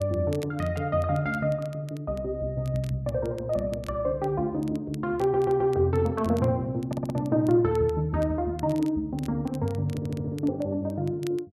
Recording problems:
crackle; vinyl, SNR 25 dB
audio stuttering; at 5 s, at 7 s and at 10 s

